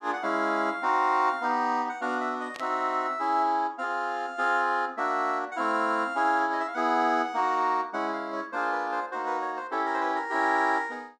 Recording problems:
burst of static; at 2.5 s; peak -10 dB vs average level

